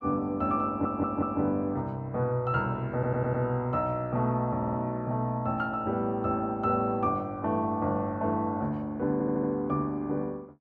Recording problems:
audio stuttering; 4 times, first at 0.5 s

